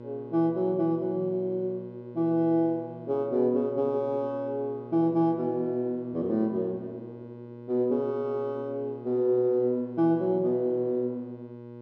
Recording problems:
hum; 60 Hz, harmonics up to 1.1 kHz, SNR 15 dB

